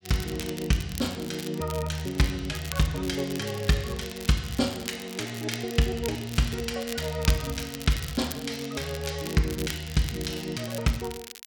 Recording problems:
crackle; vinyl, SNR 11 dB

